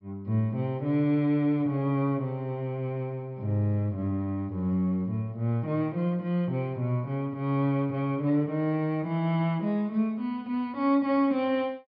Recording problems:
treble missing; nothing above 5.5 kHz

